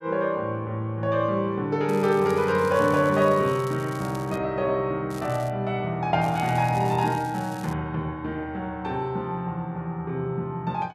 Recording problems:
crackle; from 2 to 4.5 s, at 5 s and from 6 to 7.5 s; loose cable, SNR 21 dB

